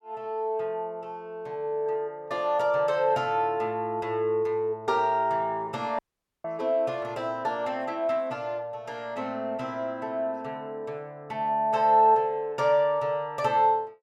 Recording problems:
dropout; at 6 s

